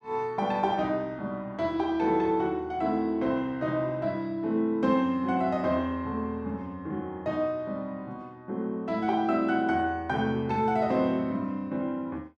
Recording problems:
none

